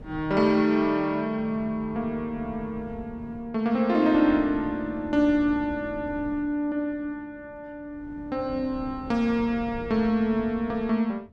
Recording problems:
wind noise; below 260 Hz, SNR 18 dB

